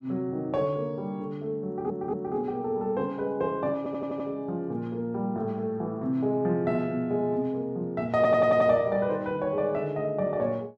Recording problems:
stutter; at 1.5 s, at 4 s and at 8 s

